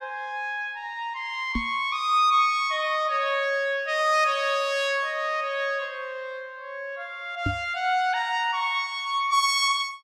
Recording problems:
microphone bump; at 1.5 s and at 7.5 s; peak 0 dB vs average level

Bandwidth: 16 kHz